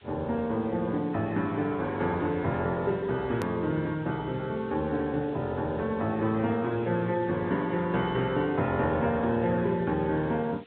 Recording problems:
treble cut off; nothing above 4 kHz
lossy codec; AAC, log-spectral distance 10 dB
background hiss; SNR 27 dB
click at an edit; at 3.5 s

